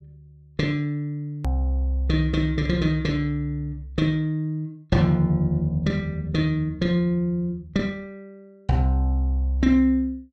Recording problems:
edit click; at 1.5 s

